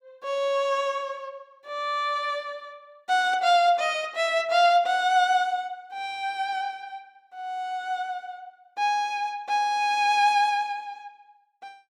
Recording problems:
none

